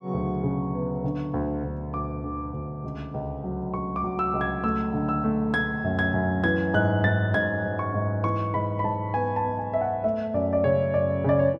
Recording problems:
none

